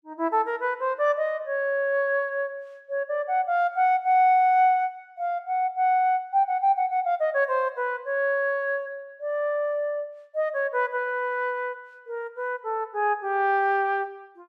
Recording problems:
none

